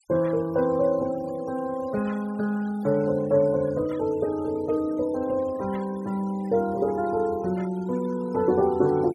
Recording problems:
denoising artefacts; signal-to-artefact ratio 22 dB

